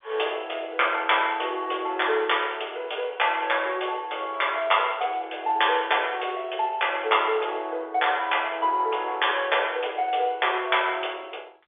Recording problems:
telephone audio; 370 Hz to 3.6 kHz, G.711

